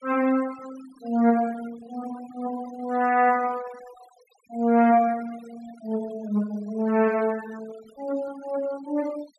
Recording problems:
noise reduction artefacts; signal-to-artefact ratio 22 dB

